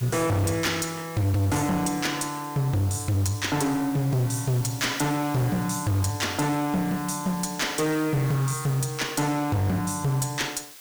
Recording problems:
distortion; hard clipping, uneven, signal-to-distortion ratio 5 dB
hiss; slope +2 dB per octave, SNR 16 dB

